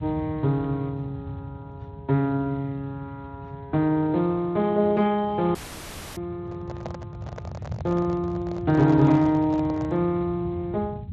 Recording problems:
lossy compression; Speex, log-spectral distance 2 dB
rumble; below 160 Hz, SNR 14 dB
audio cutting out; at 5.5 s for 0.5 s
microphone handling noise; from 6.5 to 10 s; peak -8 dB vs average level

